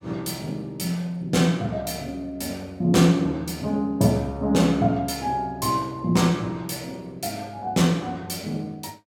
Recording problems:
none

